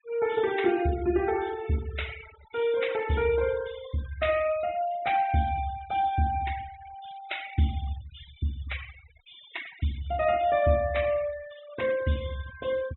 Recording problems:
treble cut off; nothing above 3.9 kHz
noise reduction artefacts; signal-to-artefact ratio 15 dB

